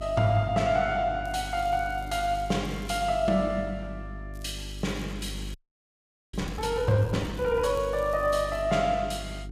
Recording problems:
hum; 50 Hz, harmonics up to 400 Hz, SNR 12 dB
crackling; from 1.5 to 3 s, from 4.5 to 7 s and from 7 to 8.5 s; loose cable, SNR 27 dB
audio freezing; at 5.5 s for 1 s

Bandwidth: 14.5 kHz